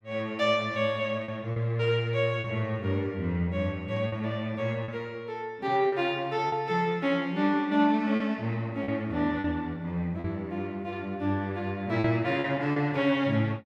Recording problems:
lost packets; 4% of the sound replaced, filled with repeated pitch periods

